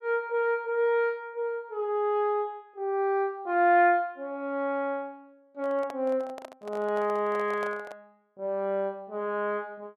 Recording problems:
handling noise; from 5.5 to 8 s; peak -8 dB vs average level

